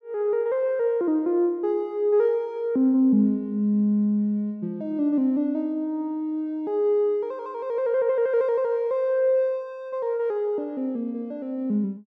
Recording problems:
none

